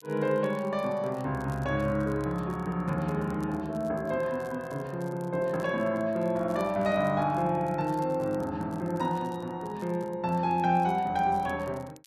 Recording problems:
crackle; vinyl, SNR 28 dB

